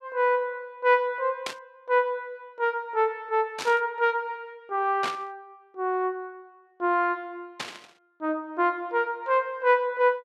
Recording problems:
static burst; 4 times, first at 1.5 s; peak -1 dB vs average level

